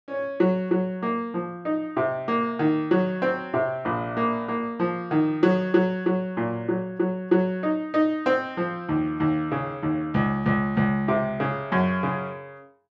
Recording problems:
none

